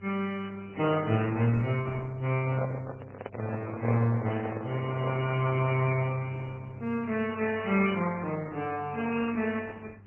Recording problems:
codec artefacts; MP3, then Opus, log-spectral distance 4 dB
electrical hum; 50 Hz, harmonics up to 800 Hz, SNR 20 dB
microphone handling noise; from 2.5 to 5.5 s; peak +1 dB vs average level

